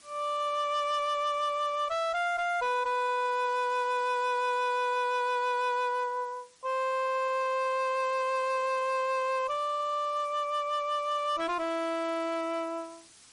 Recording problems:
lossy compression; MP3, log-spectral distance 3 dB, nothing above 9.5 kHz
distortion; hard clipping, signal-to-distortion ratio 11 dB
hiss; SNR 25 dB

